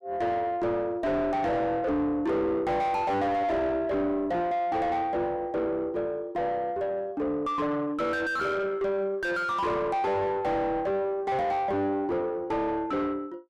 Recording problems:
distorted audio; soft clipping, signal-to-distortion ratio 6 dB

